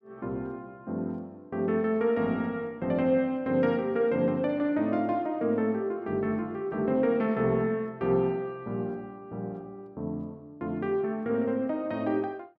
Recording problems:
none

